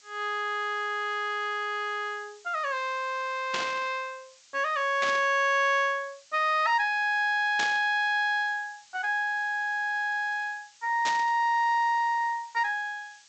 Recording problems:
treble missing; nothing above 8 kHz
hiss; slope +5 dB per octave, SNR 27 dB
burst of static; 4 times, first at 3.5 s; peak 0 dB vs average level

